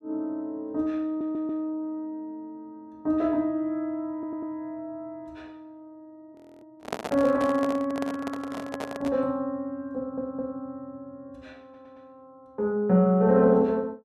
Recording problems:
stutter; 4 times, first at 1 s
frozen audio; at 6.5 s
microphone handling noise; from 7 to 9 s; peak +1 dB vs average level

